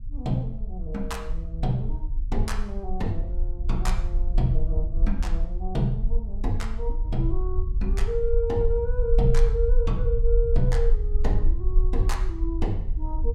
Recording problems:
rumble; below 46 Hz, strongest tone 26 Hz, SNR -2 dB

